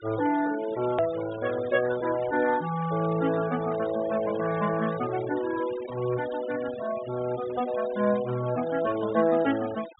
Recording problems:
low-pass filter; nothing above 4 kHz
denoising artefacts; signal-to-artefact ratio 16 dB
hard cut with a click; at 1 s

